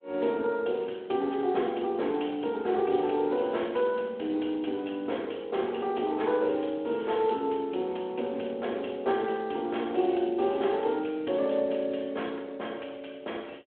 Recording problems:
telephone audio; 240 Hz to 3.4 kHz, Speex

